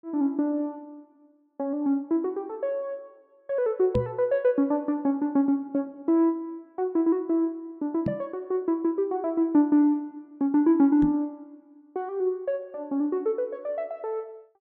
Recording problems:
microphone thump; at 4 s, at 8 s and at 11 s; peak +1 dB vs average level

